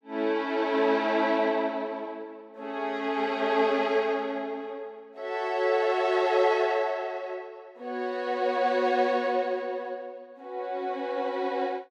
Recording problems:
none

